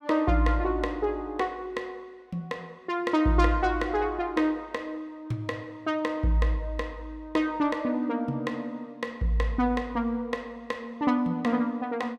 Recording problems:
none

